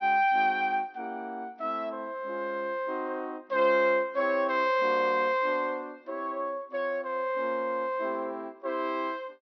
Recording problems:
treble cut off; nothing above 6.1 kHz

